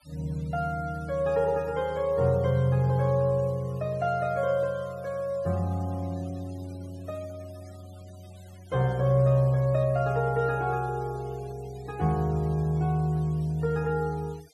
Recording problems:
denoising artefacts; signal-to-artefact ratio 27 dB

